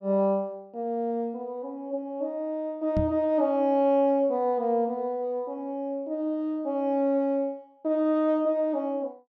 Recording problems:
microphone thump; at 3 s; peak +1 dB vs average level

